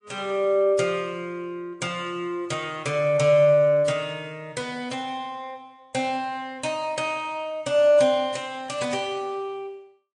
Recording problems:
lossy codec; MP3, then AAC, log-spectral distance 2 dB, nothing above 9.5 kHz

